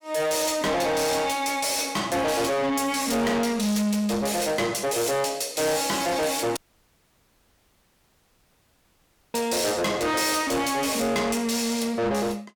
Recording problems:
distorted audio; soft clipping, signal-to-distortion ratio 7 dB
audio cutting out; at 6.5 s for 3 s

